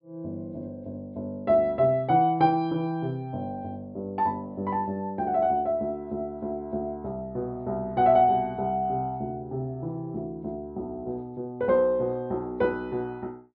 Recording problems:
treble cut off; nothing above 5.5 kHz

